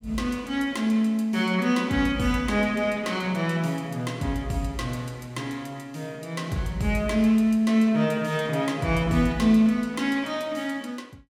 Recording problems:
none

